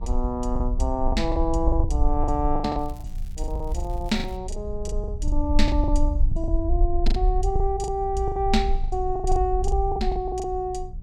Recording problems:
hum; 60 Hz, harmonics up to 600 Hz, SNR 17 dB
low-frequency rumble; below 54 Hz, strongest tone 24 Hz, SNR 1 dB
packet loss; 15% of the sound replaced, filled with the last packet
crackling; from 3 to 4.5 s; loose cable, SNR 27 dB

